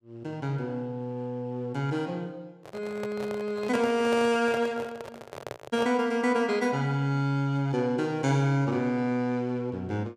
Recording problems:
handling noise; from 2.5 to 6 s; peak -3 dB vs average level

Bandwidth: 15 kHz